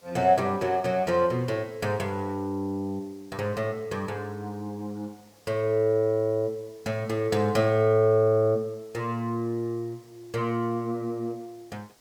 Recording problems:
hiss; SNR 30 dB

